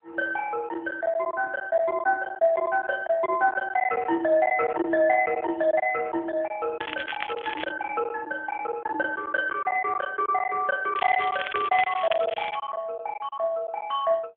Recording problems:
telephone audio; 300 Hz to 3.6 kHz, AMR-NB
packet loss; 10% of the sound replaced, filled with silence
crackling; at 7 s and from 11 to 13 s; loose cable, SNR 10 dB

